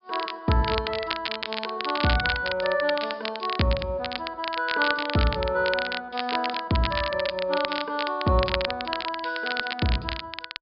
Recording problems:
low-pass filter; nothing above 5.1 kHz
crackle; vinyl, SNR 5 dB

